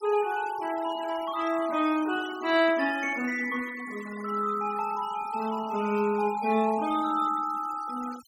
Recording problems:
denoising artefacts; signal-to-artefact ratio 18 dB

